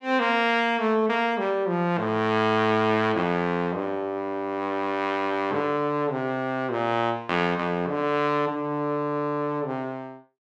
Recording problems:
none

